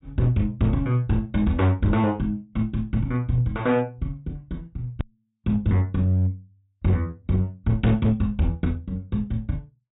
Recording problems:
treble missing; nothing above 4 kHz
distortion; hard clipping, signal-to-distortion ratio 11 dB
click at an edit; at 5 s

